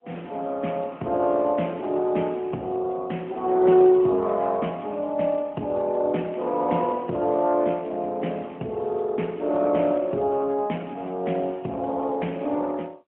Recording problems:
phone line; 170 Hz to 3.3 kHz, AMR-NB, then MP3

